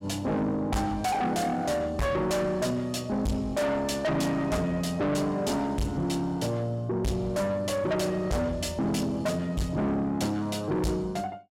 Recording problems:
distortion; soft clipping, signal-to-distortion ratio 6 dB

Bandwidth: 16 kHz